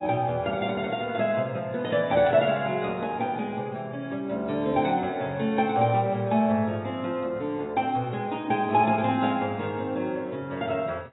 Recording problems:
lossy compression; AAC, log-spectral distance 2 dB, nothing above 3.8 kHz

